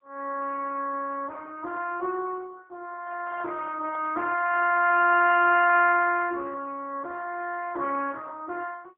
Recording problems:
phone line; 300 Hz to 3.1 kHz, AMR-NB, then MP3
handling noise; from 3 to 5.5 s; peak -15 dB vs average level

